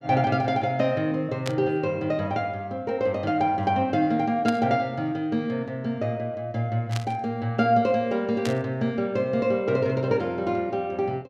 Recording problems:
burst of static; 4 times, first at 1.5 s; peak -3 dB vs average level

